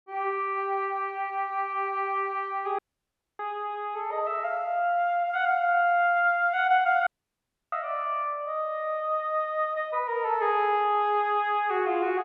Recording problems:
dropout; at 3 s for 0.5 s and at 7 s for 0.5 s

